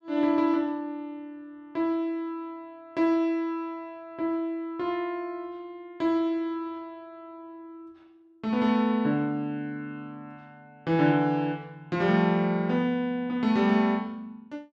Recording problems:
none

